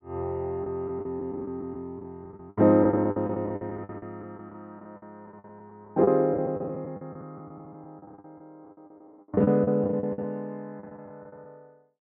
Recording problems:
packet loss; 16% of the sound replaced, filled with the last packet

